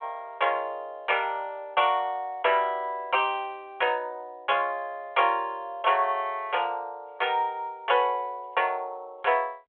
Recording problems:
telephone audio; 370 Hz to 3.4 kHz, G.726

